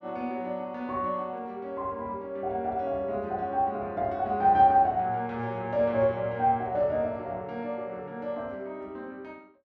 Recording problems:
none

